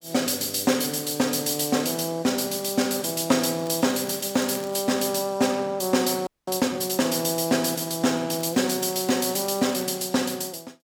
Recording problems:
crackle; from 3.5 to 5 s and from 8.5 to 10 s; loose cable, SNR 20 dB
frozen audio; at 6.5 s

